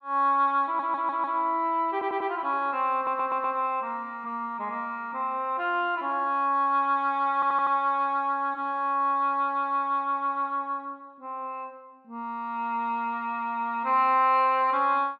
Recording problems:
audio stuttering; 4 times, first at 0.5 s

